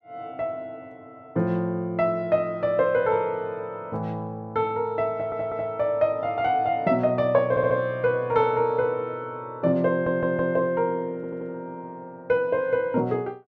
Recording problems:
audio stuttering; 4 times, first at 5 s

